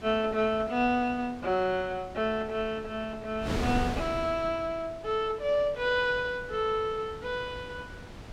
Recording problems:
wind noise; below 620 Hz, SNR 11 dB

